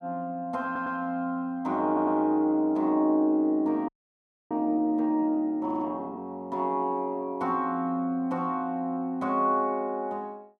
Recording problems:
stutter; at 0.5 s, at 2 s and at 5.5 s
audio freezing; at 4 s for 0.5 s

